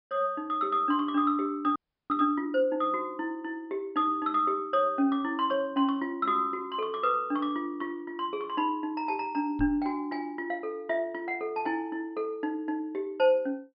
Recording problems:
treble missing; nothing above 5.5 kHz
frozen audio; at 2 s
microphone thump; at 9.5 s; peak -4 dB vs average level

